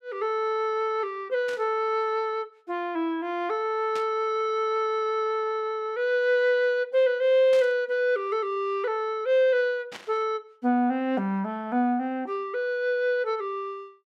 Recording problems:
burst of static; 4 times, first at 1.5 s; peak -9 dB vs average level

